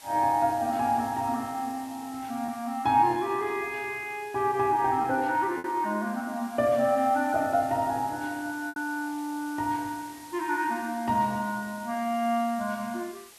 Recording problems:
hiss; slope +1 dB per octave, SNR 20 dB
packet loss; 1.4% of the sound replaced, filled with repeated pitch periods

